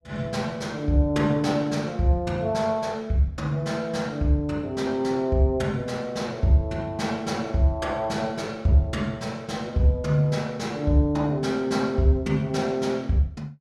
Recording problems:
none

